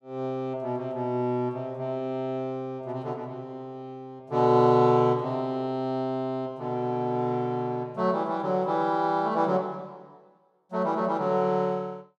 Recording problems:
none

